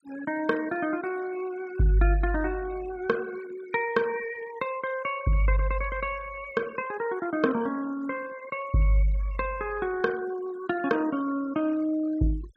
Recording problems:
noise reduction artefacts; signal-to-artefact ratio 20 dB

